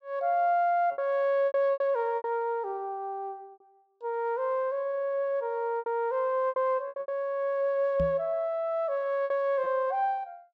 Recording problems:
packet loss; 7% of the sound replaced, filled with repeated pitch periods
microphone bump; at 8 s; peak -2 dB vs average level

